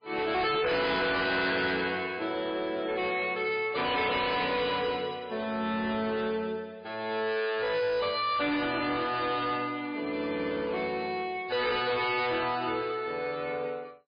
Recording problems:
lossy compression; MP3, log-spectral distance 4 dB, nothing above 4.1 kHz
distortion; hard clipping, signal-to-distortion ratio 7 dB

